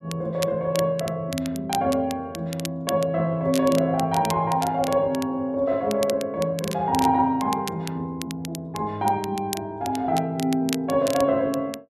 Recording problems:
crackling; vinyl, SNR 13 dB

